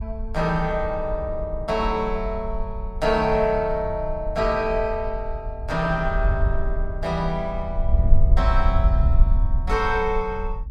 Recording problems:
wind on the microphone; below 64 Hz, SNR 2 dB

